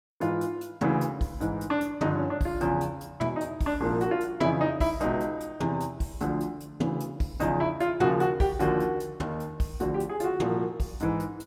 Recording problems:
none

